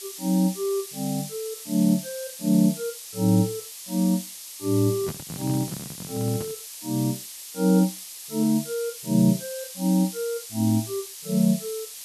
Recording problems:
hiss; SNR 11 dB
microphone handling noise; from 5 to 6.5 s; peak -5 dB vs average level

